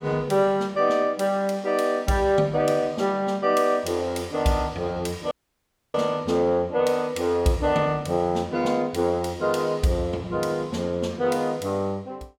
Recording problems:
dropout; at 5.5 s for 0.5 s

